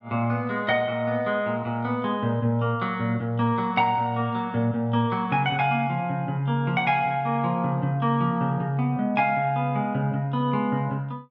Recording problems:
none

